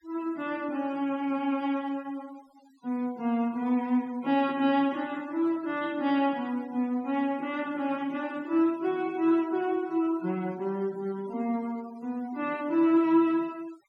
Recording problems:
denoising artefacts; signal-to-artefact ratio 25 dB

